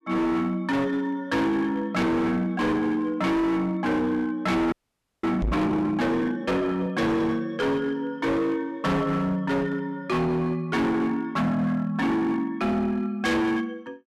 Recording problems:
distortion; hard clipping, signal-to-distortion ratio 6 dB
frozen audio; at 4.5 s for 0.5 s
knock on the microphone; at 5.5 s; peak 0 dB vs average level

